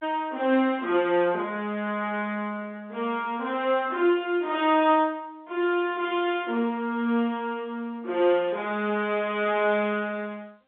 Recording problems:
telephone audio; 280 Hz to 3.9 kHz, G.711

